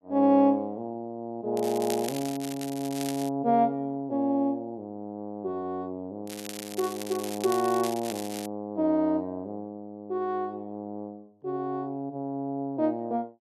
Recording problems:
crackling; from 1.5 to 3.5 s and from 6.5 to 8.5 s; loose cable, SNR 11 dB

